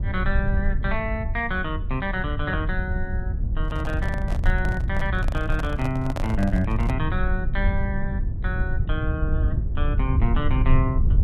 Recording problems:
rumble; below 82 Hz, SNR -2 dB
microphone handling noise; from 3.5 to 7 s; peak +1 dB vs average level

